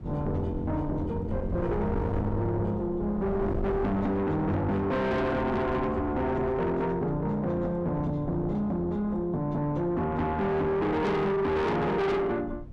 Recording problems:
distortion; soft clipping, signal-to-distortion ratio 7 dB
wind on the microphone; below 210 Hz, SNR 10 dB

